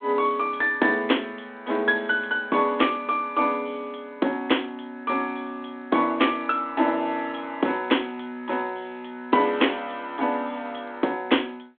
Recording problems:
phone line; 240 Hz to 3.5 kHz, G.726

